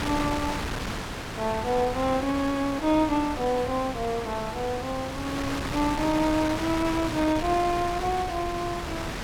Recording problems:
wind on the microphone; below 2.2 kHz, SNR 6 dB

